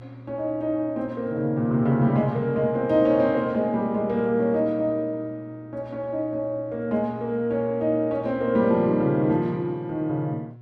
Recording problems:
electrical hum; 60 Hz, harmonics up to 720 Hz, SNR 19 dB

